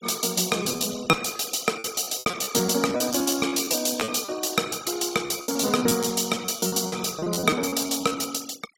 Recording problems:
denoising artefacts; signal-to-artefact ratio 18 dB
lost packets; 15% of the sound replaced, filled with repeated pitch periods

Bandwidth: 16 kHz